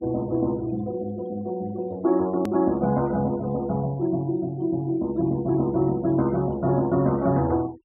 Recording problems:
treble missing; nothing above 4 kHz
noise reduction artefacts; signal-to-artefact ratio 26 dB
click at an edit; at 2.5 s

